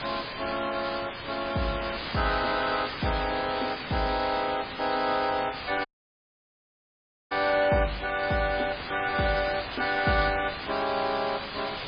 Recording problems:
lossy codec; MP3, log-spectral distance 21 dB, nothing above 4.8 kHz
hiss; SNR 7 dB
dropout; at 6 s for 1.5 s

